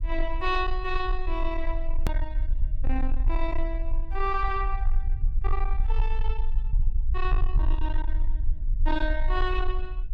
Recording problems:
distorted audio; soft clipping, signal-to-distortion ratio 12 dB
low-frequency rumble; below 40 Hz, strongest tone 20 Hz, SNR -2 dB
click at an edit; at 2 s

